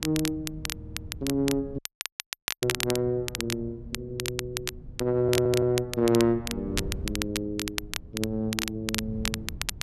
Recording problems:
wind on the microphone; below 140 Hz, SNR 14 dB
crackling; vinyl, SNR 5 dB
audio stuttering; at 1 s and at 5 s
audio cutting out; at 2 s for 1 s

